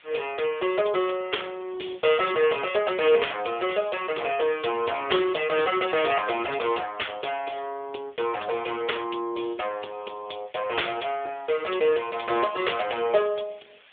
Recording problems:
telephone audio; 320 Hz to 3.5 kHz, AMR-NB
hiss; SNR 27 dB

